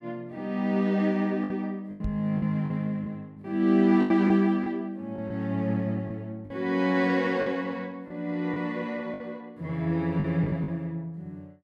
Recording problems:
packet loss; 7% of the sound replaced, filled with the last packet
microphone bump; at 2 s; peak -2 dB vs average level

